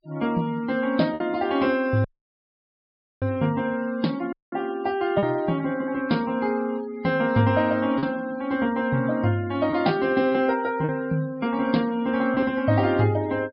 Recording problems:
treble cut off; nothing above 5.2 kHz
denoising artefacts; signal-to-artefact ratio 21 dB
packet loss; 2% of the sound replaced, filled with repeated pitch periods
audio cutting out; at 2 s for 1 s and at 4.5 s

